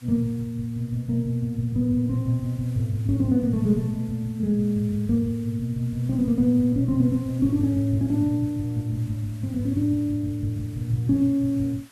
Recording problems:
background hiss; slope -1 dB per octave, SNR 28 dB

